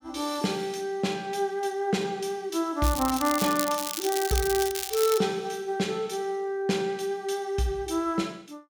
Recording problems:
crackling; from 3 to 5 s; loose cable, SNR 4 dB

